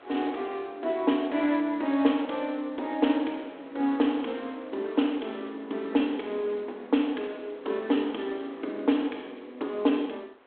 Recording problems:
telephone audio; 240 Hz to 3.5 kHz, G.726
wind noise; below 1.7 kHz, SNR 25 dB

